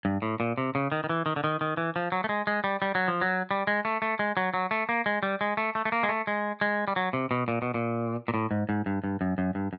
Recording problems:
none

